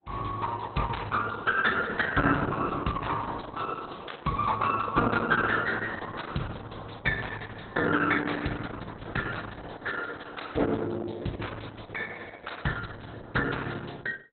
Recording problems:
codec artefacts; Opus, log-spectral distance 7 dB, nothing above 4 kHz

